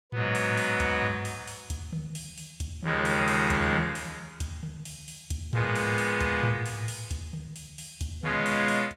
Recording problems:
none

